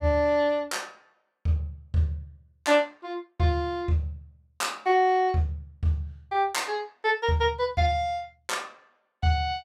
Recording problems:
none

